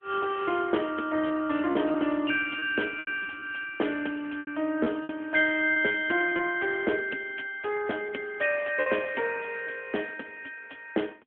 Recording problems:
phone line; 240 Hz to 3.3 kHz, AMR-NB
packet loss; 6% of the sound replaced, filled with repeated pitch periods

